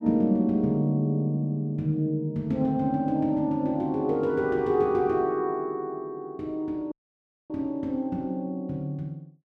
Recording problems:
dropout; at 7 s for 0.5 s

